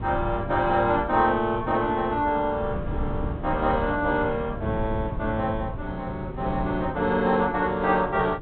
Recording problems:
treble missing; nothing above 4 kHz
wind on the microphone; below 180 Hz, SNR 10 dB

